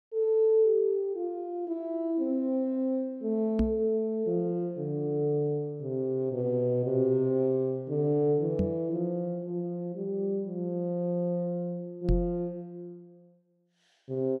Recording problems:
knock on the microphone; at 3.5 s, at 8.5 s and at 12 s; peak +4 dB vs average level

